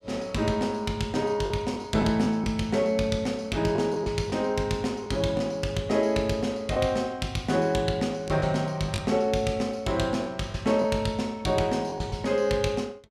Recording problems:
packet loss; 4% of the sound replaced, filled with the last packet

